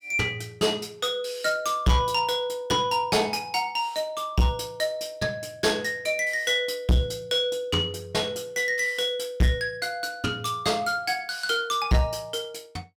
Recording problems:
distortion; soft clipping, signal-to-distortion ratio 7 dB

